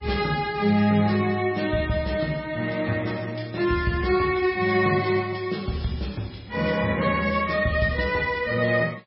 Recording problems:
lossy compression; MP3, log-spectral distance 4 dB, nothing above 5.3 kHz

